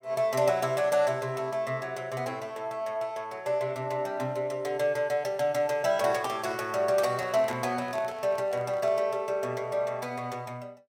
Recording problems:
handling noise; from 6 to 9 s; peak -7 dB vs average level

